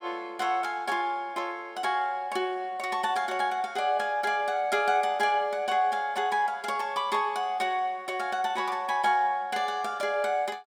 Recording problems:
none

